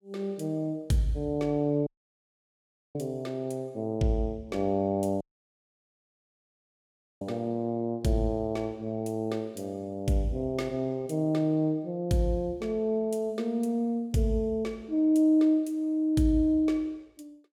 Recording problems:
dropout; at 2 s for 1 s and at 5 s for 2 s

